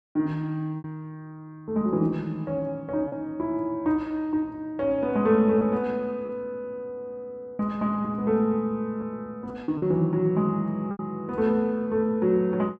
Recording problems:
packet loss; 3% of the sound replaced, filled with repeated pitch periods

